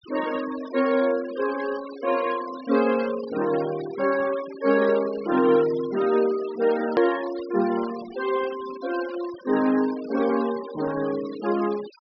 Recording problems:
treble missing; nothing above 5.5 kHz
denoising artefacts; signal-to-artefact ratio 16 dB
edit click; at 7 s

